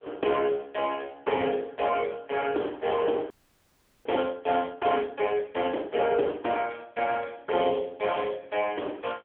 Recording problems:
phone line; 280 Hz to 3.3 kHz, AMR-NB
audio freezing; at 3.5 s for 1 s

